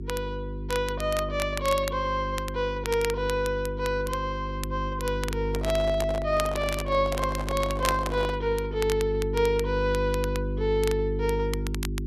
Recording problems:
mains hum; 50 Hz, harmonics up to 400 Hz, SNR 5 dB
crackling; vinyl, SNR 12 dB
microphone handling noise; from 5.5 to 8.5 s; peak -3 dB vs average level

